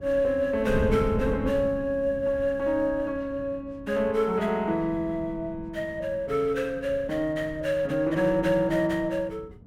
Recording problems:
wind on the microphone; below 180 Hz, SNR 13 dB

